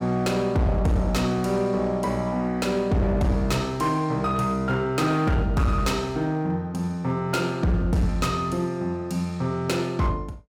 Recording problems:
distorted audio; hard clipping, signal-to-distortion ratio 10 dB

